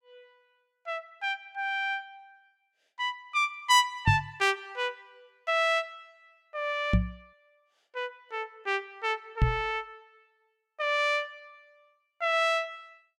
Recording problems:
microphone bump; at 4 s, at 7 s and at 9.5 s; peak +8 dB vs average level

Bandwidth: 16.5 kHz